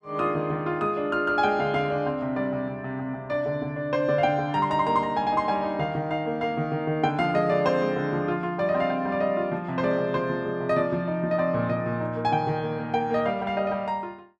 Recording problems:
none

